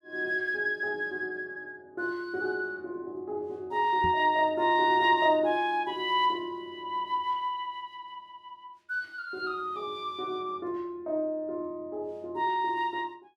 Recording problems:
knock on the microphone; at 4 s; peak -3 dB vs average level

